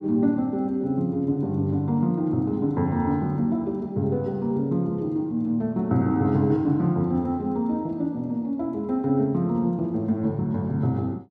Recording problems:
none

